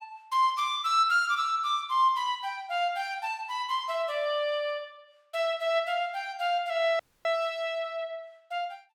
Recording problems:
audio cutting out; at 7 s

